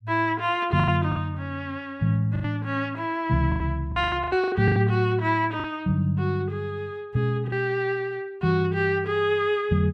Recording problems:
lost packets; 7% of the sound replaced, filled with the last packet

